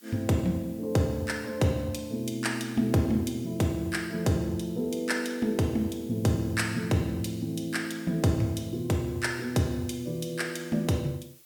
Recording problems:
hiss; slope +1 dB per octave, SNR 24 dB

